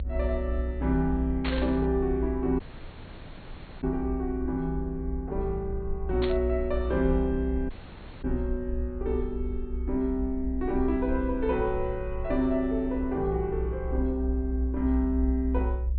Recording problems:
low-pass filter; nothing above 4.4 kHz
electrical hum; 50 Hz, harmonics up to 600 Hz, SNR 20 dB
low-frequency rumble; below 64 Hz, strongest tone 62 Hz, SNR 4 dB
static burst; at 1.5 s and at 6 s; peak -1 dB vs average level
dropout; at 2.5 s for 1 s and at 7.5 s for 0.5 s

